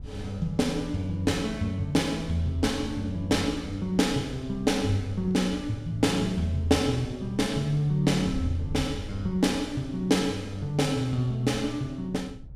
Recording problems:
wind on the microphone; below 120 Hz, SNR 15 dB

